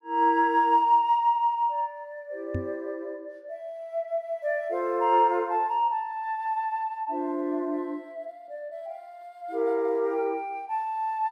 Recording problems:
knock on the microphone; at 2.5 s; peak -1 dB vs average level

